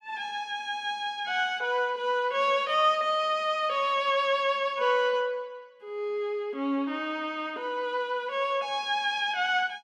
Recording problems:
none

